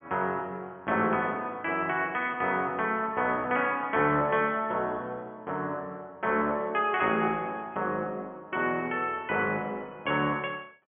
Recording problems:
treble cut off; nothing above 3.3 kHz

